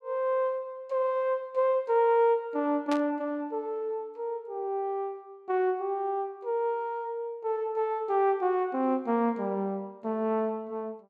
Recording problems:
burst of static; at 3 s; peak -5 dB vs average level

